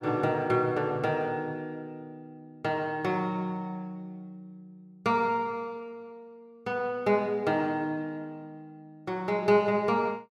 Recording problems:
none

